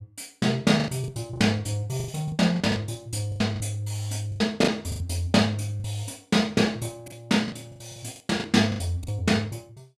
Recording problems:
lost packets; 12% of the sound replaced, filled with the last packet

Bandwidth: 14.5 kHz